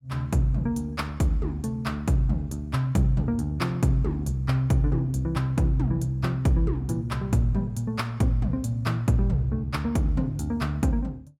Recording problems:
none

